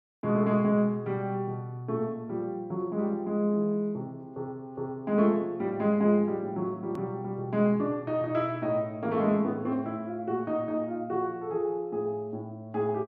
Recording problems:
click at an edit; at 7 s

